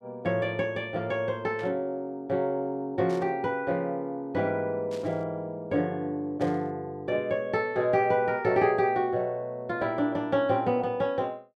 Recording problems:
burst of static; 4 times, first at 1.5 s; peak -14 dB vs average level

